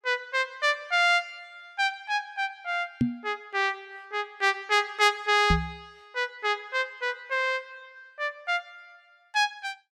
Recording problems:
knock on the microphone; at 3 s and at 5.5 s; peak +6 dB vs average level

